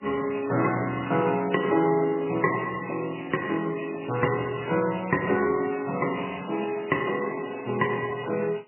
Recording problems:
codec artefacts; MP3, log-spectral distance 12 dB, nothing above 2.9 kHz

